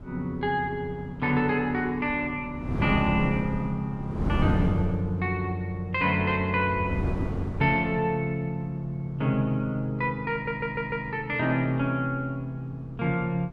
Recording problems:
wind noise; below 260 Hz, SNR 8 dB
stutter; at 10 s

